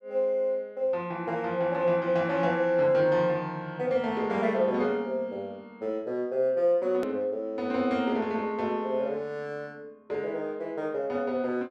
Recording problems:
edit click; at 7 s

